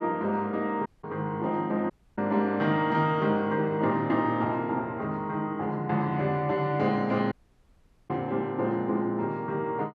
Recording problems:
audio cutting out; at 1 s, at 2 s and at 7.5 s for 1 s

